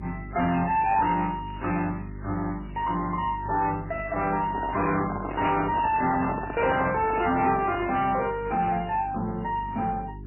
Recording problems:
lossy codec; MP3, then AAC, log-spectral distance 5 dB, nothing above 2.8 kHz
distortion; soft clipping, signal-to-distortion ratio 11 dB
hum; 50 Hz, harmonics up to 400 Hz, SNR 14 dB
crackle; from 1.5 to 4.5 s and at 7.5 s; loose cable, SNR 28 dB
handling noise; from 4.5 to 8 s; peak -2 dB vs average level

